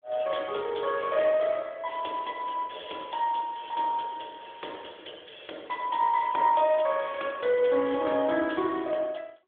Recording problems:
telephone audio; 280 Hz to 3.5 kHz, AMR-NB

